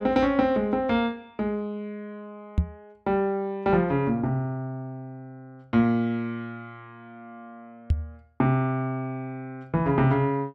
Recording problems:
knock on the microphone; at 2.5 s and at 8 s; peak +6 dB vs average level

